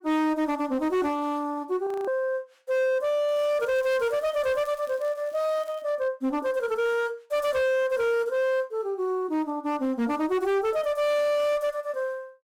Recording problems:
distorted audio; hard clipping, uneven, signal-to-distortion ratio 10 dB
frozen audio; at 2 s
crackling; from 3.5 to 6 s; loose cable, SNR 29 dB

